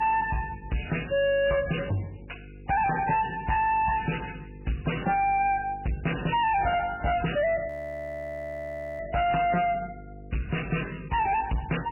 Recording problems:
lossy compression; MP3, log-spectral distance 7 dB, nothing above 2.8 kHz
distortion; soft clipping, signal-to-distortion ratio 5 dB
hum; 50 Hz, harmonics up to 500 Hz, SNR 18 dB
audio freezing; at 7.5 s for 1.5 s

